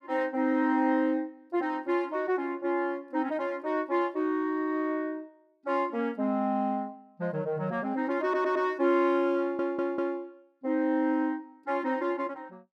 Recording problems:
audio stuttering; at 8 s and at 9.5 s

